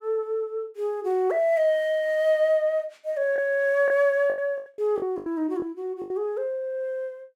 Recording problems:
packet loss; 6% of the sound replaced, filled with the last packet

